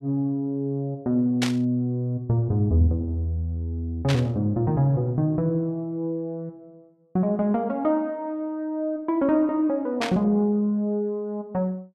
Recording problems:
burst of static; at 1.5 s, at 4 s and at 10 s; peak +2 dB vs average level

